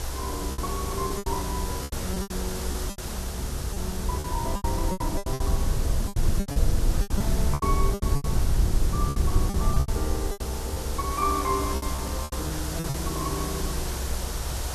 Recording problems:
background hiss; SNR 2 dB
low-frequency rumble; below 84 Hz, SNR -3 dB
lost packets; 13% of the sound replaced, filled with repeated pitch periods

